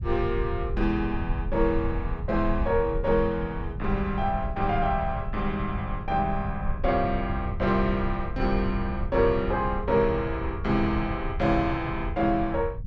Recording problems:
rumble; below 82 Hz, SNR 7 dB

